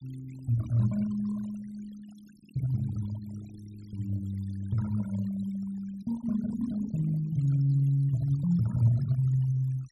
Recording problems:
noise reduction artefacts; signal-to-artefact ratio 22 dB

